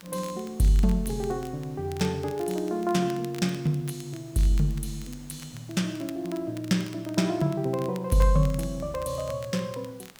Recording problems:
hiss; slope -3 dB per octave, SNR 26 dB
crackle; vinyl, SNR 21 dB

